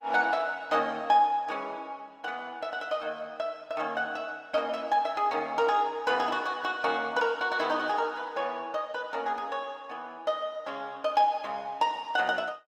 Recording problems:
lossy codec; Opus, log-spectral distance 2 dB

